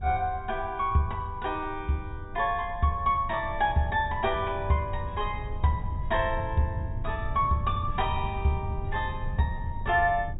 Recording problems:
low-pass filter; nothing above 4 kHz
rumble; below 100 Hz, SNR 9 dB

